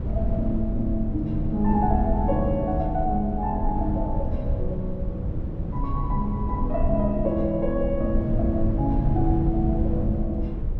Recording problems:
low-frequency rumble; below 100 Hz, SNR 2 dB

